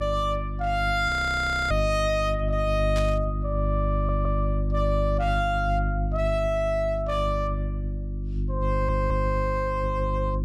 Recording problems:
distorted audio; hard clipping, uneven, signal-to-distortion ratio 7 dB
hum; 50 Hz, harmonics up to 350 Hz, SNR 2 dB
frozen audio; at 1 s for 0.5 s
static burst; at 3 s; peak -6 dB vs average level
stutter; at 4 s and at 8.5 s

